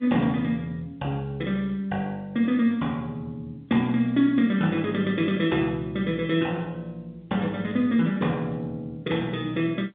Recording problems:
telephone audio; 190 Hz to 3.6 kHz, G.711

